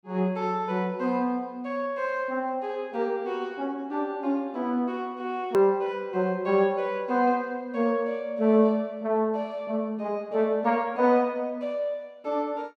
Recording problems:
edit click; at 5.5 s

